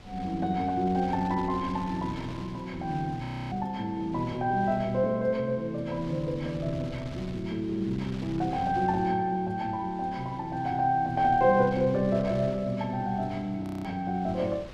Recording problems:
wind on the microphone; below 750 Hz, SNR 17 dB
frozen audio; at 3.5 s and at 14 s

